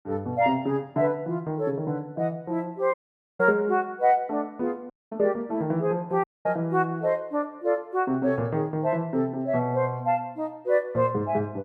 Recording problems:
dropout; at 3 s, at 5 s and at 6 s

